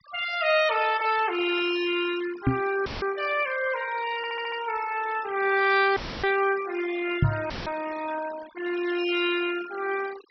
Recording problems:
low-pass filter; nothing above 5.7 kHz
denoising artefacts; signal-to-artefact ratio 14 dB
microphone thump; at 2.5 s and at 7 s; peak +7 dB vs average level
audio cutting out; at 3 s, at 6 s and at 7.5 s; filled with static
audio stuttering; at 4 s

